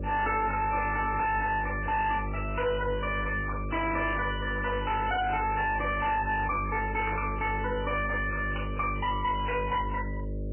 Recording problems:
codec artefacts; MP3, log-spectral distance 6 dB, nothing above 2.7 kHz
distortion; hard clipping, uneven, signal-to-distortion ratio 10 dB
mains hum; 50 Hz, harmonics up to 600 Hz, SNR 6 dB
burst of static; at 5.5 s and at 7 s; peak -4 dB vs average level

